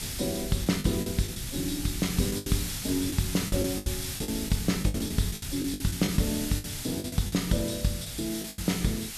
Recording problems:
hiss; slope +3 dB per octave, SNR 6 dB
low-frequency rumble; below 130 Hz, SNR 13 dB
lost packets; 12% of the sound replaced, filled with the last packet

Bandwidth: 13.5 kHz